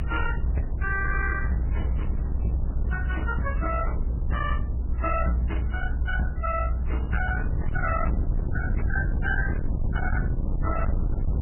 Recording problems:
codec artefacts; MP3, then Vorbis, log-spectral distance 2 dB, nothing above 3 kHz
distorted audio; hard clipping, uneven, signal-to-distortion ratio 7 dB
rumble; below 94 Hz, SNR -2 dB
wind noise; below 720 Hz, SNR 18 dB

